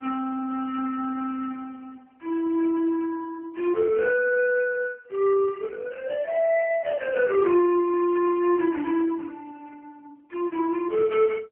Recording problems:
phone line; 280 Hz to 3 kHz, AMR-NB

